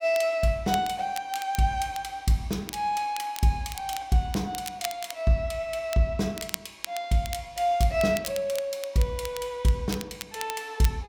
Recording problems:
crackling; vinyl, SNR 12 dB

